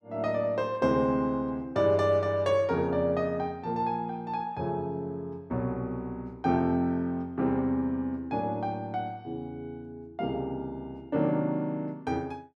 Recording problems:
none

